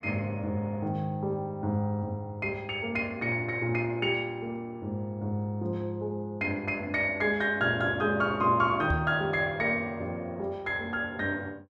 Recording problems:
knock on the microphone; at 9 s; peak +3 dB vs average level

